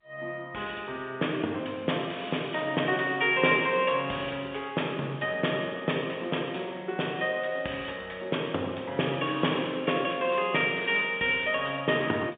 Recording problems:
phone line; 220 Hz to 3.5 kHz, G.711

